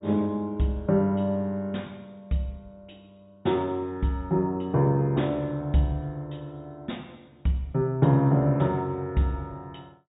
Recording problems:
low-pass filter; nothing above 4 kHz

